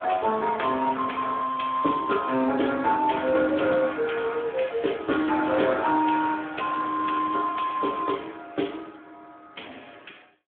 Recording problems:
phone line; 220 Hz to 3.5 kHz, Speex

